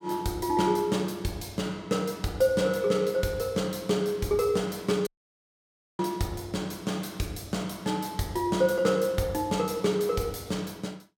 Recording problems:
dropout; at 5 s for 1 s

